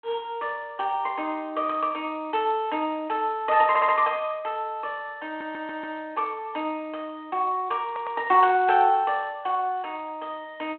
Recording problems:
telephone audio; 260 Hz to 3.3 kHz, G.726
stutter; at 3.5 s, at 5.5 s and at 8 s

